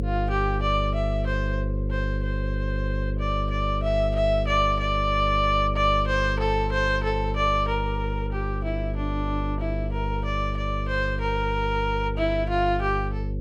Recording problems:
hum; 50 Hz, harmonics up to 550 Hz, SNR 2 dB

